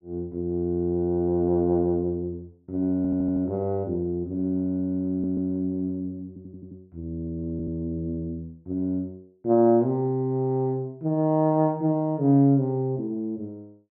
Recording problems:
stutter; 4 times, first at 3 s

